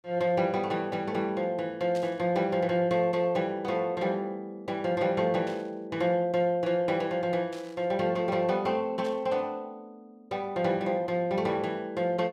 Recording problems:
burst of static; 4 times, first at 2 s; peak -13 dB vs average level

